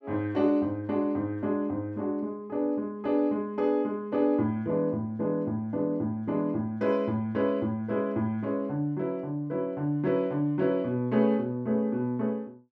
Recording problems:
none

